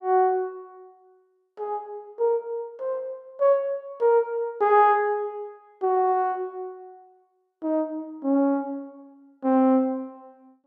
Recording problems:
none

